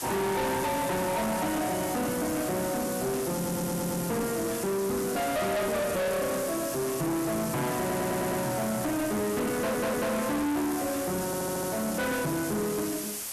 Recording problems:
distorted audio; soft clipping, signal-to-distortion ratio 6 dB
background hiss; SNR 6 dB
audio stuttering; 4 times, first at 3.5 s

